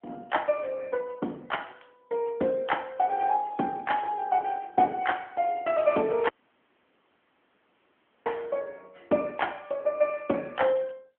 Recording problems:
phone line; 190 Hz to 3.4 kHz, AMR-NB
audio cutting out; at 6.5 s for 2 s

